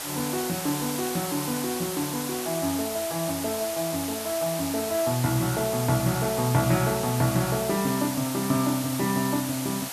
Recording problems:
hiss; SNR 5 dB

